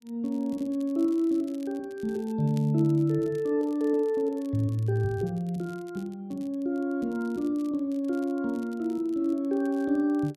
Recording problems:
crackling; vinyl, SNR 29 dB

